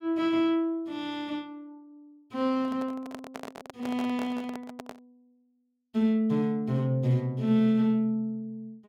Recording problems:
handling noise; from 2.5 to 5 s; peak -7 dB vs average level

